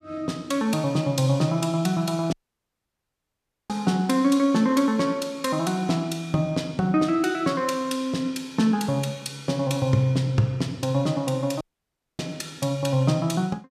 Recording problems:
dropout; at 2.5 s for 1.5 s and at 12 s for 0.5 s

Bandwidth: 14.5 kHz